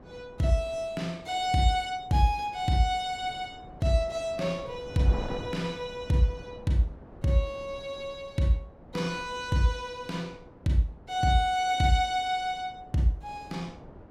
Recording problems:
wind on the microphone; below 570 Hz, SNR 18 dB

